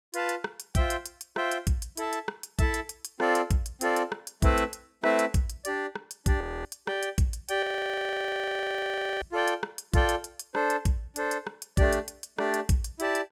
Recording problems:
frozen audio; at 6.5 s and at 7.5 s for 1.5 s

